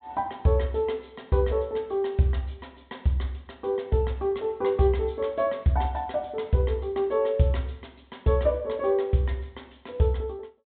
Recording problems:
treble missing; nothing above 4 kHz

